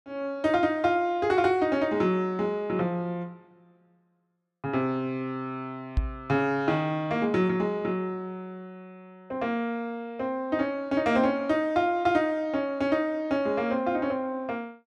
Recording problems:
microphone thump; at 6 s; peak +5 dB vs average level

